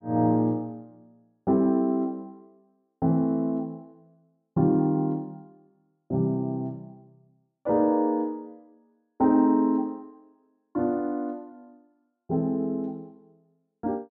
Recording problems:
none

